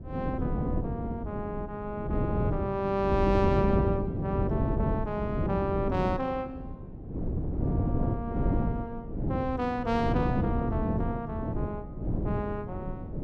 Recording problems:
wind noise; below 270 Hz, SNR -1 dB

